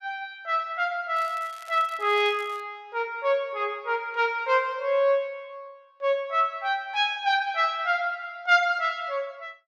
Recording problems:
crackle; from 1 to 2.5 s; loose cable, SNR 25 dB

